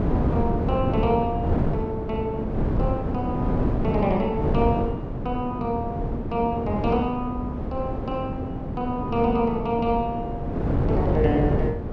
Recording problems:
wind noise; below 350 Hz, SNR 0 dB

